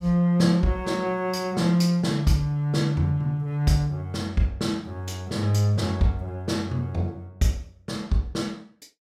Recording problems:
none

